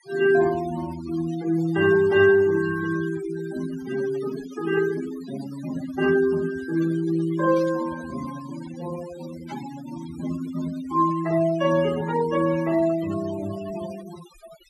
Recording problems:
denoising artefacts; signal-to-artefact ratio 15 dB
burst of static; at 7.5 s and at 9.5 s; peak -19 dB vs average level

